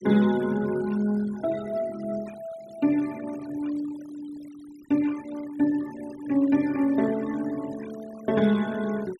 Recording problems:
noise reduction artefacts; signal-to-artefact ratio 19 dB

